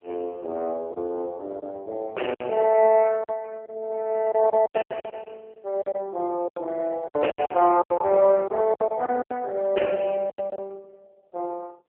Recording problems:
telephone audio; 300 Hz to 3 kHz, AMR-NB
packet loss; 11% of the sound replaced, filled with silence

